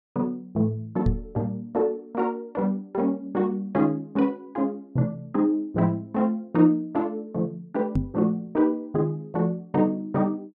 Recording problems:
microphone thump; at 1 s and at 8 s; peak +5 dB vs average level

